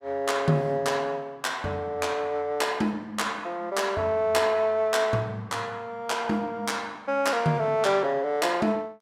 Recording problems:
none

